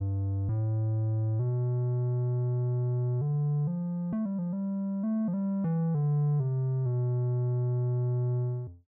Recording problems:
none

